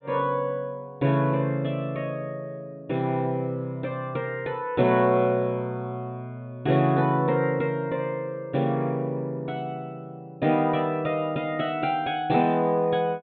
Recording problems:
treble missing; nothing above 4 kHz

